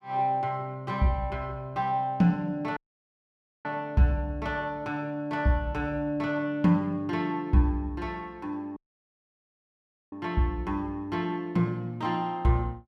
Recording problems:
dropout; at 3 s for 1 s and at 9 s for 1.5 s

